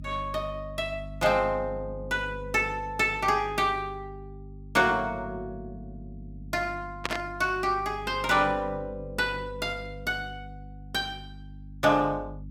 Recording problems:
hum; 50 Hz, harmonics up to 300 Hz, SNR 15 dB
burst of static; at 7 s; peak +3 dB vs average level

